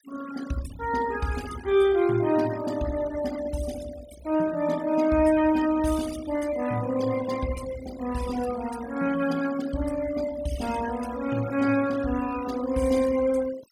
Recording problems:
denoising artefacts; signal-to-artefact ratio 16 dB

